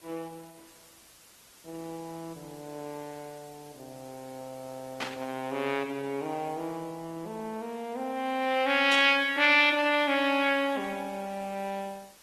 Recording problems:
codec artefacts; Opus, log-spectral distance 6 dB
hiss; slope -1 dB per octave, SNR 28 dB
burst of static; at 5 s and at 9 s; peak -3 dB vs average level

